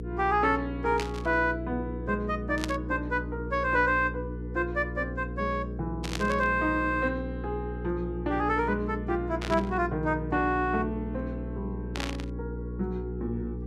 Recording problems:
hum; 60 Hz, harmonics up to 480 Hz, SNR 7 dB
static burst; 5 times, first at 1 s; peak 0 dB vs average level

